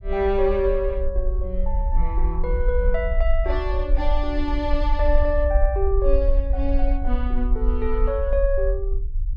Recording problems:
rumble; below 52 Hz, SNR 0 dB

